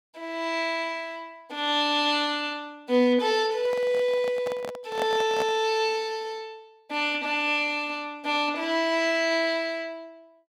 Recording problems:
handling noise; from 3.5 to 5.5 s; peak -1 dB vs average level

